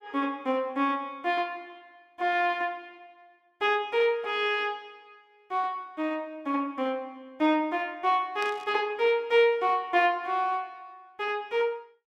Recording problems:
static burst; at 8.5 s; peak -8 dB vs average level

